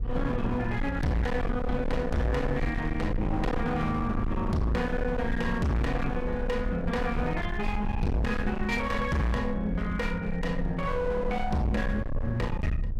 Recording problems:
distortion; hard clipping, signal-to-distortion ratio 6 dB
low-frequency rumble; below 100 Hz, SNR 5 dB

